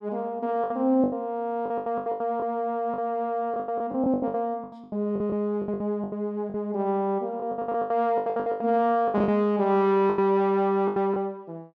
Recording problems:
lost packets; 18% of the sound replaced, filled with the last packet

